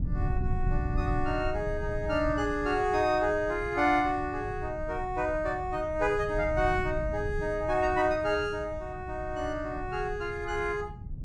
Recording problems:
low-frequency rumble; below 120 Hz, SNR 8 dB

